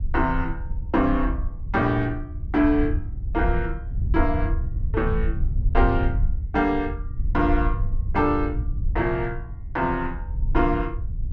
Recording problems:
rumble; below 74 Hz, SNR 3 dB

